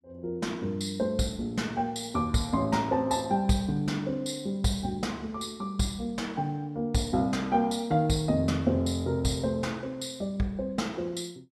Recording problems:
none

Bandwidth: 14 kHz